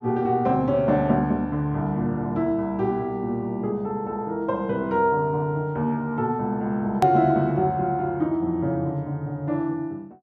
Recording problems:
click at an edit; at 7 s

